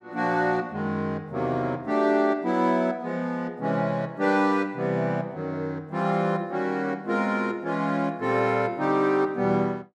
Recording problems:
none

